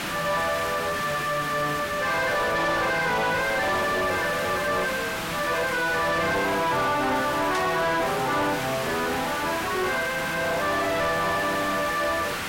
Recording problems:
distorted audio; soft clipping, signal-to-distortion ratio 7 dB
background hiss; SNR 6 dB
burst of static; at 7.5 s; peak -7 dB vs average level

